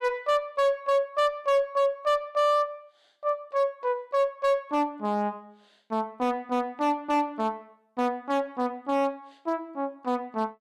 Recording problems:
distortion; hard clipping, uneven, signal-to-distortion ratio 12 dB

